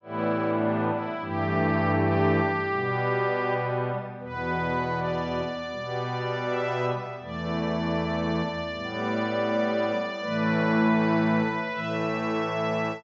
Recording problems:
treble missing; nothing above 8 kHz

